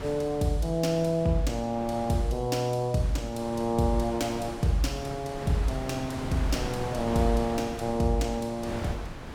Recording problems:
wind on the microphone; below 970 Hz, SNR 10 dB

